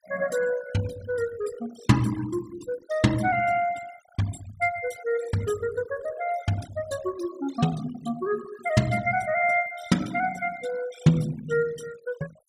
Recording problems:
noise reduction artefacts; signal-to-artefact ratio 16 dB

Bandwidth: 15.5 kHz